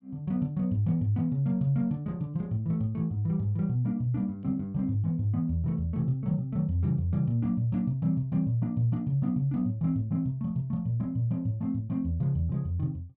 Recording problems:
none

